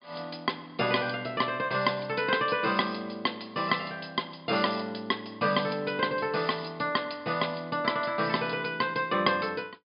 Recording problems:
treble missing; nothing above 5.1 kHz

